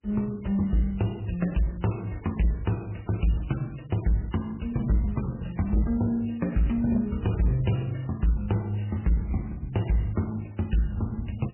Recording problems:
codec artefacts; MP3, log-spectral distance 4 dB, nothing above 3 kHz
distortion; soft clipping, signal-to-distortion ratio 12 dB

